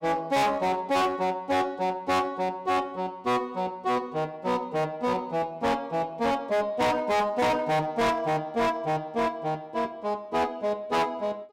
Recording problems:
distorted audio; hard clipping, uneven, signal-to-distortion ratio 6 dB

